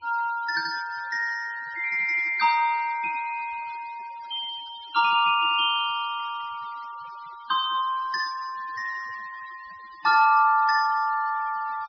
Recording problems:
treble missing; nothing above 5.5 kHz
noise reduction artefacts; signal-to-artefact ratio 22 dB

